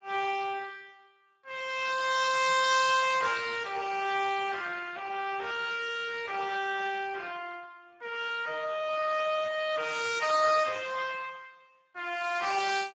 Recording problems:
lossy compression; Speex, log-spectral distance 6 dB, nothing above 7.6 kHz

